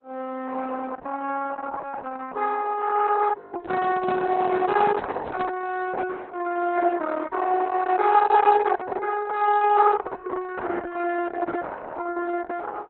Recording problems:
lossy compression; Opus, log-spectral distance 4 dB, nothing above 4 kHz
handling noise; from 3.5 to 5.5 s; peak -3 dB vs average level

